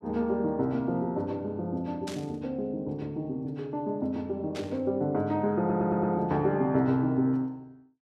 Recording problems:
burst of static; at 2 s and at 4.5 s; peak -7 dB vs average level
audio stuttering; at 5.5 s

